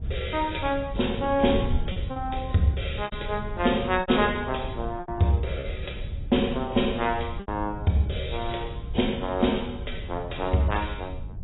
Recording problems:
codec artefacts; AAC, log-spectral distance 7 dB, nothing above 3.8 kHz
wind noise; below 100 Hz, SNR 9 dB
packet loss; 4% of the sound replaced, filled with repeated pitch periods

